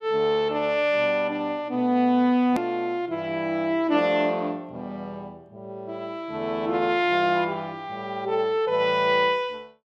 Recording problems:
click at an edit; at 2.5 s

